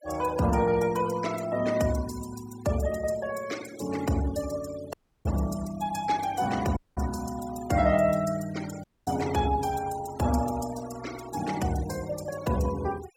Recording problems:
denoising artefacts; signal-to-artefact ratio 15 dB
dropout; at 5 s, at 7 s and at 9 s

